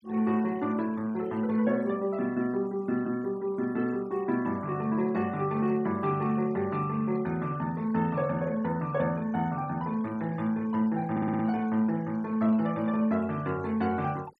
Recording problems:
denoising artefacts; signal-to-artefact ratio 24 dB
stutter; at 11 s

